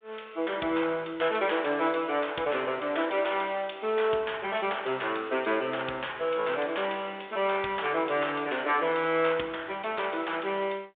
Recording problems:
telephone audio; 220 Hz to 3.6 kHz, G.726

